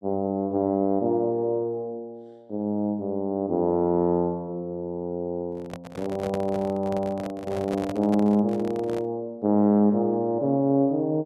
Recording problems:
microphone handling noise; from 5.5 to 9 s; peak -5 dB vs average level

